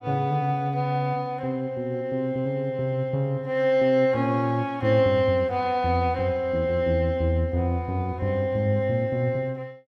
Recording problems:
none

